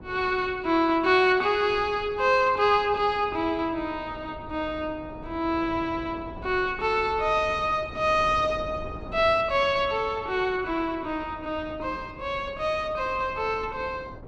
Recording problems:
wind noise; below 420 Hz, SNR 18 dB

